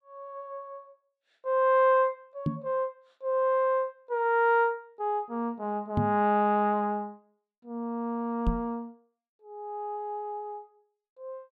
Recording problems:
microphone bump; at 2.5 s, at 6 s and at 8.5 s; peak +4 dB vs average level

